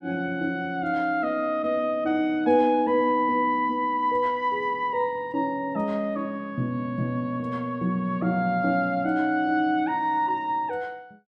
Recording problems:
none

